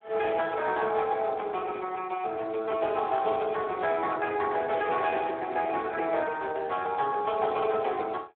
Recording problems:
telephone audio; 280 Hz to 3.3 kHz, Speex

